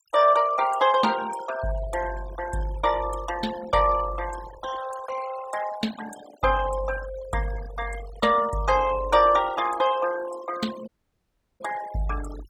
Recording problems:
denoising artefacts; signal-to-artefact ratio 15 dB
audio cutting out; at 11 s for 0.5 s

